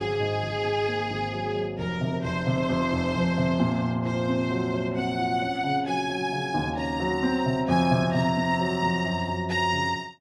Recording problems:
none

